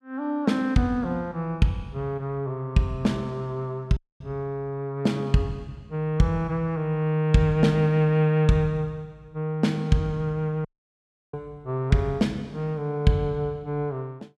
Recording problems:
audio cutting out; at 4 s and at 11 s for 0.5 s

